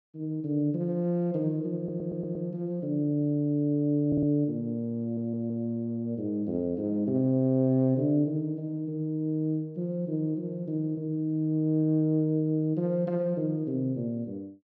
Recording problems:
audio stuttering; at 2 s, at 4 s and at 5 s

